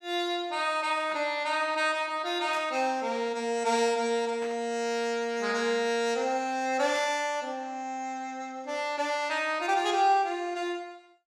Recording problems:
burst of static; 4 times, first at 1 s; peak -10 dB vs average level

